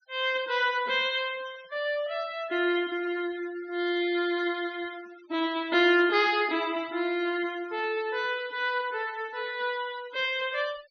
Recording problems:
low-pass filter; nothing above 6.3 kHz
denoising artefacts; signal-to-artefact ratio 20 dB

